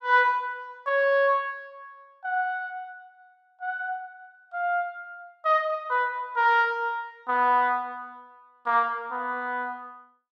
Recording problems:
none

